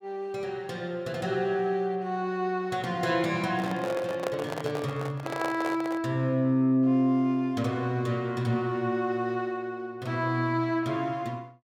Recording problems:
microphone handling noise; from 3.5 to 6 s; peak 0 dB vs average level

